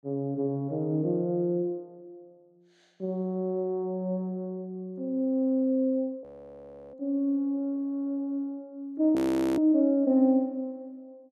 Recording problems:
frozen audio; at 6 s for 0.5 s and at 9 s

